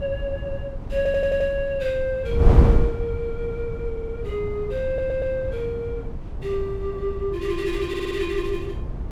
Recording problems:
wind noise; below 120 Hz, SNR 1 dB
audio stuttering; 4 times, first at 1 s

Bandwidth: 16 kHz